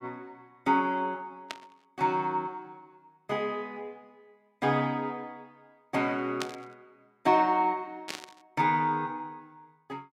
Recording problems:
static burst; at 1.5 s, at 6.5 s and at 8 s; peak -1 dB vs average level

